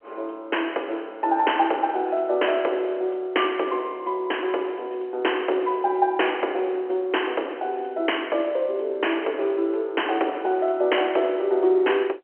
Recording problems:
phone line; 300 Hz to 3.1 kHz, G.711

